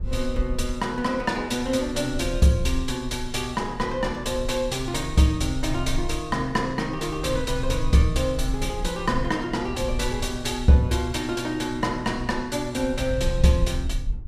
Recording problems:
low-frequency rumble; below 58 Hz, SNR 10 dB

